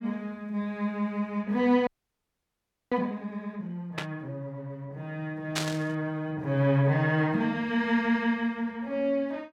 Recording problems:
frozen audio; at 2 s for 1 s
static burst; at 4 s and at 5.5 s; peak +4 dB vs average level

